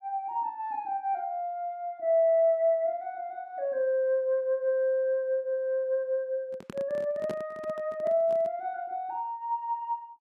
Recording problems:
handling noise; from 6.5 to 8.5 s; peak -4 dB vs average level

